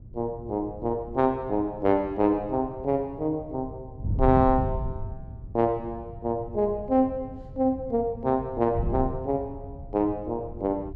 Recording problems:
wind noise; below 120 Hz, SNR 10 dB

